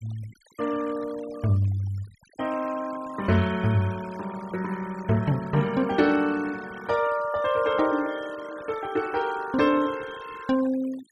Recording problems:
noise reduction artefacts; signal-to-artefact ratio 18 dB

